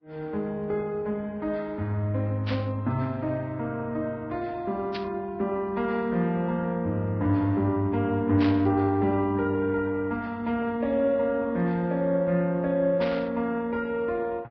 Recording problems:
lossy compression; Vorbis, log-spectral distance 2 dB
static burst; 4 times, first at 2.5 s; peak -4 dB vs average level

